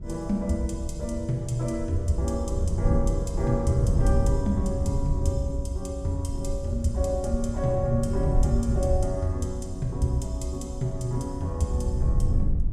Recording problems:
rumble; below 64 Hz, SNR 13 dB
wind noise; below 110 Hz, SNR 2 dB

